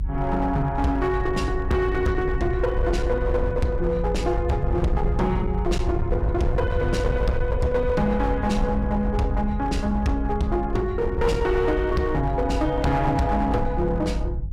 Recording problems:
distortion; hard clipping, signal-to-distortion ratio 11 dB
rumble; below 76 Hz, strongest tone 50 Hz, SNR 5 dB
wind noise; below 100 Hz, SNR 9 dB

